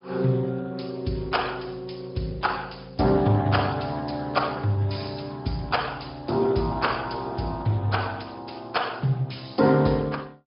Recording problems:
treble cut off; nothing above 5.2 kHz
lossy codec; Speex, log-spectral distance 5 dB

